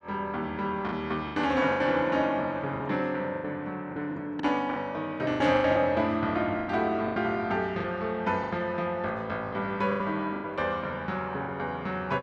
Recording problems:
packet loss; 10% of the sound replaced, filled with the last packet

